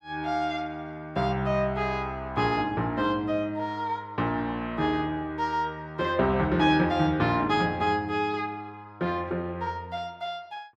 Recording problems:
none

